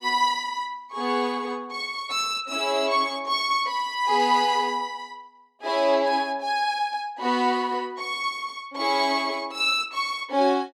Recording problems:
none

